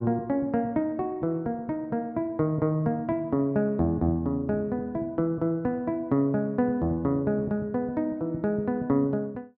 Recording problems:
none

